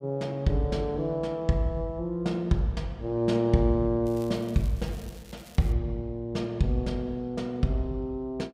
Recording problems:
crackle; from 4 to 5.5 s; loose cable, SNR 23 dB

